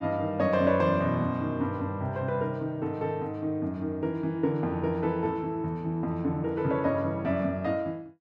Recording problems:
none

